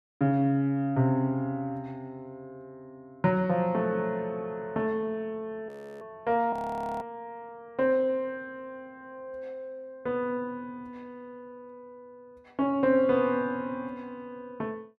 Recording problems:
frozen audio; at 5.5 s and at 6.5 s

